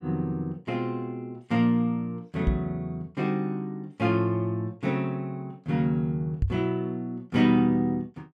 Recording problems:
knock on the microphone; at 2.5 s and at 6.5 s; peak +5 dB vs average level

